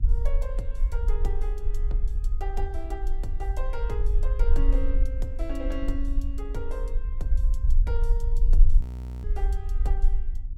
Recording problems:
electrical hum; 60 Hz, harmonics up to 360 Hz, SNR 16 dB
rumble; below 42 Hz, strongest tone 22 Hz, SNR -10 dB
audio freezing; at 9 s

